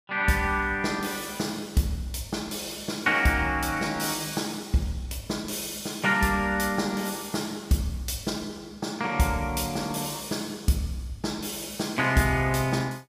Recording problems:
none

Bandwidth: 15.5 kHz